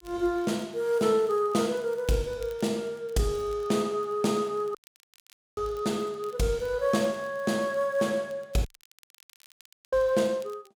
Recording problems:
crackle; vinyl, SNR 29 dB
dropout; at 5 s for 1 s and at 8.5 s for 1.5 s

